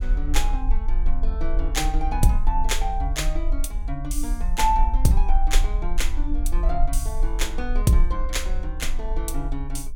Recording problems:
rumble; below 38 Hz, strongest tone 22 Hz, SNR 0 dB

